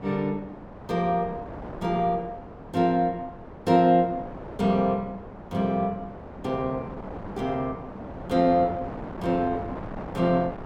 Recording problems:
wind noise; below 750 Hz, SNR 13 dB

